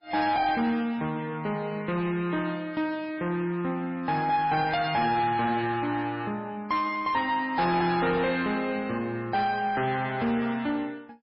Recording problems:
lossy compression; MP3, log-spectral distance 3 dB, nothing above 4.9 kHz
distorted audio; soft clipping, signal-to-distortion ratio 10 dB

